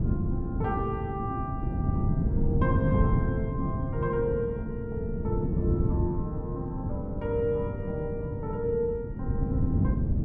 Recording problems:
wind noise; below 190 Hz, SNR -3 dB

